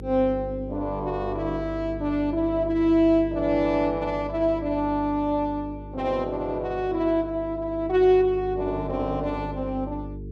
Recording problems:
hum; 50 Hz, harmonics up to 450 Hz, SNR 13 dB

